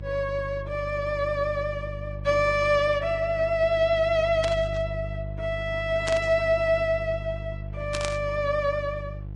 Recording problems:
lossy codec; MP3, then Vorbis, log-spectral distance 2 dB
electrical hum; 50 Hz, harmonics up to 350 Hz, SNR 11 dB
static burst; at 4.5 s, at 6 s and at 8 s; peak -2 dB vs average level

